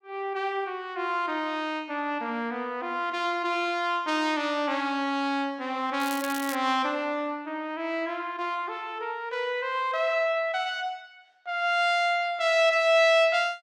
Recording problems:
crackle; at 6 s; loose cable, SNR 12 dB

